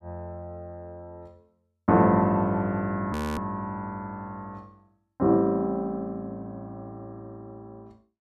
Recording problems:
frozen audio; at 3 s

